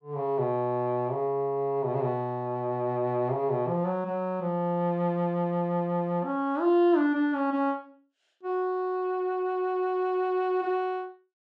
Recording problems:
none

